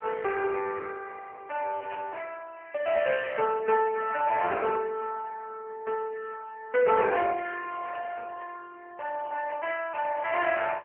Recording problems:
phone line; 370 Hz to 3 kHz, AMR-NB
burst of static; at 2 s, at 8 s and at 9.5 s; peak -10 dB vs average level

